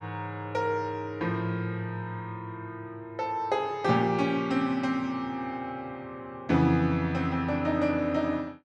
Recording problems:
none

